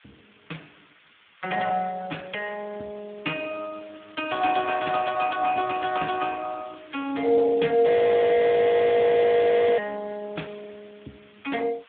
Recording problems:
phone line; 190 Hz to 3.6 kHz, Speex
background hiss; SNR 27 dB
audio freezing; at 8 s for 2 s

